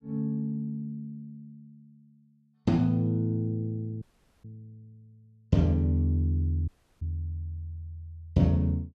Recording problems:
dropout; at 4 s and at 6.5 s

